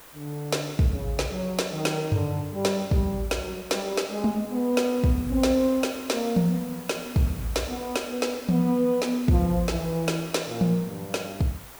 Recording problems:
hiss; slope -3 dB per octave, SNR 18 dB

